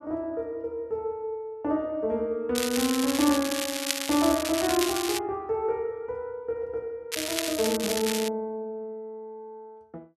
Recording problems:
crackle; from 2.5 to 5 s and from 7 to 8.5 s; loose cable, SNR 2 dB

